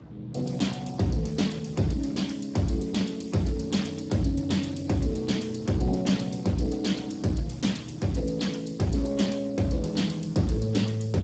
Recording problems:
codec artefacts; Speex, log-spectral distance 5 dB, nothing above 7.8 kHz
electrical hum; 50 Hz, harmonics up to 550 Hz, SNR 28 dB
wind on the microphone; below 370 Hz, SNR 23 dB

